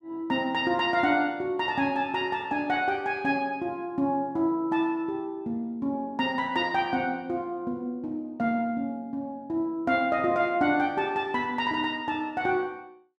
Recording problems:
none

